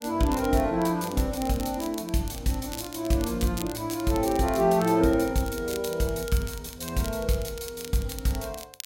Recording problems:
crackle; vinyl, SNR 15 dB

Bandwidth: 16.5 kHz